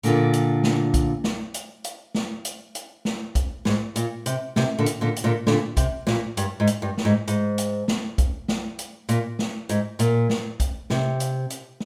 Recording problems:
none

